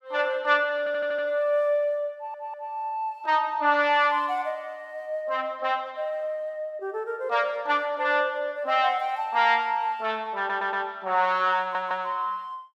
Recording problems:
stutter; 4 times, first at 1 s

